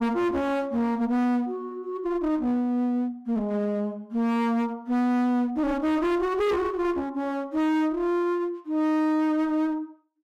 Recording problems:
distorted audio; hard clipping, uneven, signal-to-distortion ratio 6 dB

